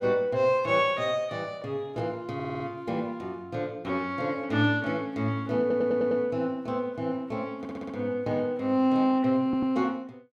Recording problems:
audio stuttering; 4 times, first at 2.5 s

